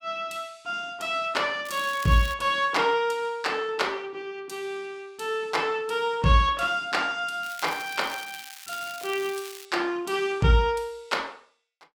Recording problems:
crackle; at 1.5 s and from 7.5 to 9.5 s; loose cable, SNR 15 dB

